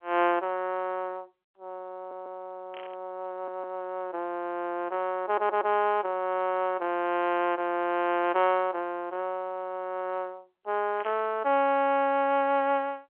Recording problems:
phone line; 300 Hz to 3.3 kHz, G.711
stutter; at 2 s, at 3.5 s and at 5.5 s
burst of static; at 2.5 s and at 11 s; peak -12 dB vs average level

